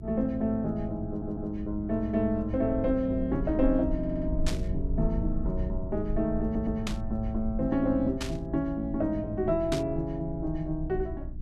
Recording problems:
hum; 60 Hz, harmonics up to 360 Hz, SNR 14 dB
low-frequency rumble; below 64 Hz, SNR 9 dB
audio stuttering; at 1 s, at 4 s and at 6.5 s
static burst; 4 times, first at 4.5 s; peak -1 dB vs average level

